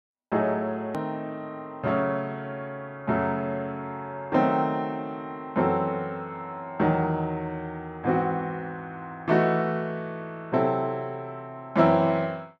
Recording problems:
click at an edit; at 1 s

